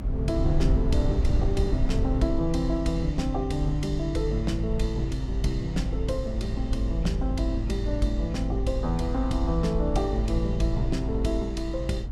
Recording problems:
low-frequency rumble; below 74 Hz, strongest tone 50 Hz, SNR 1 dB

